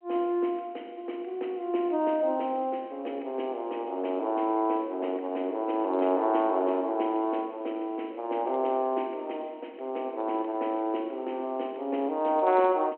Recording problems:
telephone audio; 240 Hz to 3.2 kHz, G.726

